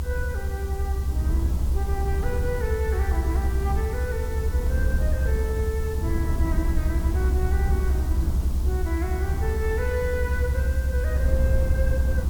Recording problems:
hiss; SNR 12 dB
rumble; below 76 Hz, strongest tone 64 Hz, SNR -7 dB

